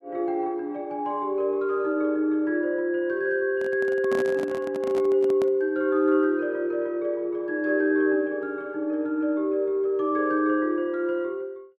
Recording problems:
microphone handling noise; from 3.5 to 5.5 s; peak -4 dB vs average level

